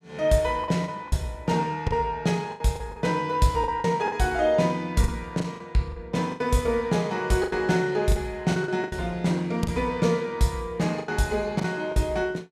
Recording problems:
packet loss; 9% of the sound replaced, filled with the last packet

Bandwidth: 14.5 kHz